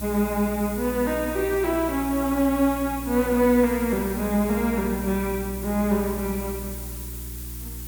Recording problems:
hum; 60 Hz, harmonics up to 360 Hz, SNR 13 dB
background hiss; slope +2 dB per octave, SNR 12 dB

